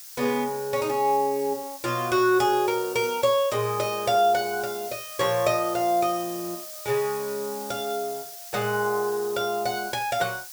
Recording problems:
hiss; slope +5 dB per octave, SNR 12 dB

